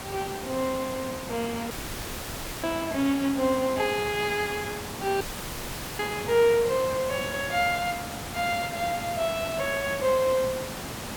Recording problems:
background hiss; slope -4 dB per octave, SNR 8 dB
dropout; at 1.5 s for 1 s and at 5 s for 1 s

